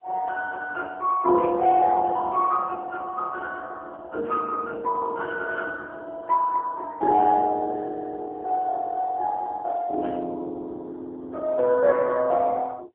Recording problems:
telephone audio; 280 Hz to 2.3 kHz, AMR-NB, then MP3

